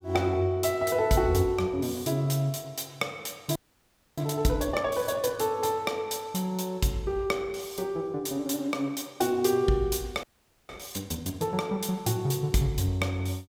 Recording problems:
frozen audio; at 3.5 s for 0.5 s and at 10 s

